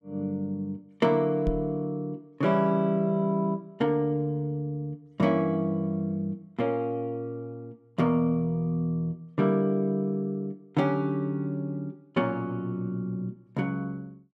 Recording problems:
microphone thump; at 1.5 s; peak +2 dB vs average level

